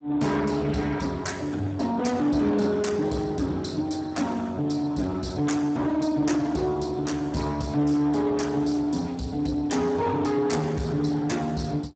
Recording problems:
codec artefacts; Speex, log-spectral distance 5 dB, nothing above 7.8 kHz
distorted audio; soft clipping, signal-to-distortion ratio 11 dB

